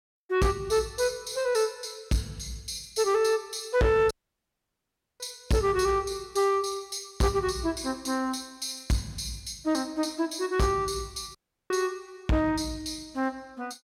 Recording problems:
distortion; hard clipping, uneven, signal-to-distortion ratio 12 dB
audio cutting out; at 4 s for 1 s and at 11 s

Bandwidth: 16.5 kHz